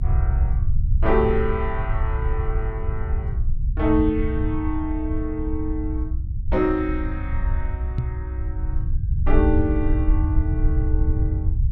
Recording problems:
low-frequency rumble; below 80 Hz, SNR -1 dB
microphone bump; at 8 s; peak +6 dB vs average level

